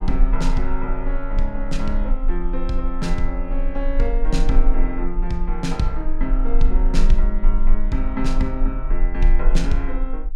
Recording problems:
low-frequency rumble; below 32 Hz, strongest tone 18 Hz, SNR -2 dB

